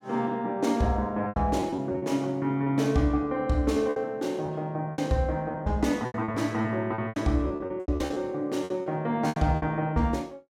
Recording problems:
lost packets; 12% of the sound replaced, filled with repeated pitch periods

